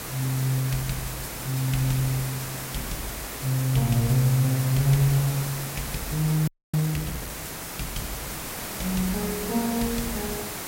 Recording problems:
background hiss; slope -3 dB per octave, SNR 6 dB
audio freezing; at 6.5 s

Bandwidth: 16 kHz